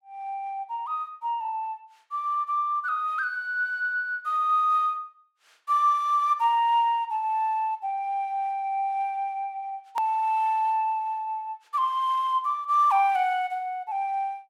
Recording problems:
edit click; at 10 s

